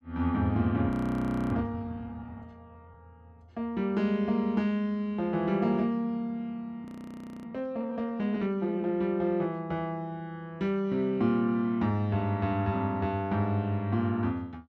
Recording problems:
audio freezing; at 1 s for 0.5 s and at 7 s for 0.5 s

